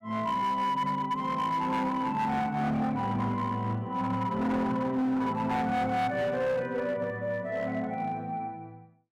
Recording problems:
distortion; hard clipping, uneven, signal-to-distortion ratio 11 dB

